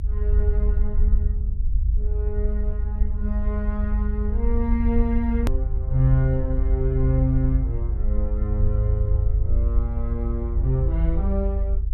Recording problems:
low-frequency rumble; below 72 Hz, SNR -3 dB
edit click; at 5.5 s

